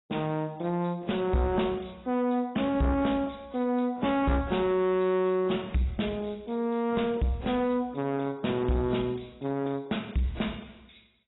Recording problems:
lossy compression; AAC, log-spectral distance 7 dB, nothing above 3.8 kHz
distortion; soft clipping, signal-to-distortion ratio 10 dB

